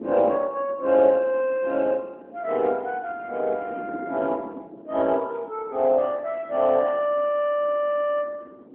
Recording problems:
phone line; 260 Hz to 3.3 kHz, AMR-NB
wind noise; below 430 Hz, SNR 18 dB

